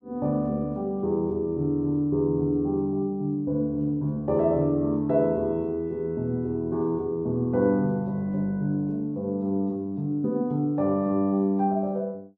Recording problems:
none

